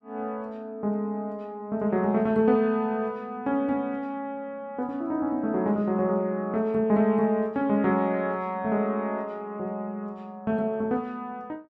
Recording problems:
none

